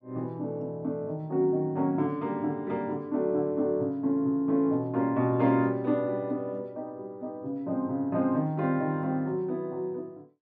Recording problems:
none

